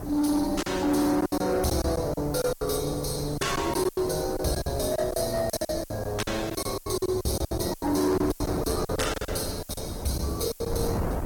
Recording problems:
lossy compression; Opus, log-spectral distance 6 dB, nothing above 17 kHz
distorted audio; soft clipping, signal-to-distortion ratio 11 dB
hiss; SNR 20 dB
wind noise; below 500 Hz, SNR 10 dB
lost packets; 15% of the sound replaced, filled with silence

